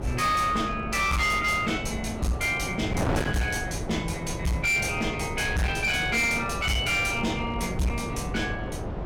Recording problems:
distortion; hard clipping, signal-to-distortion ratio 8 dB
hum; 50 Hz, harmonics up to 400 Hz, SNR 17 dB
wind on the microphone; below 610 Hz, SNR 8 dB

